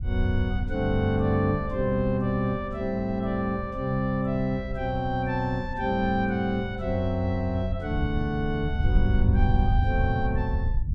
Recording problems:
rumble; below 90 Hz, SNR 4 dB

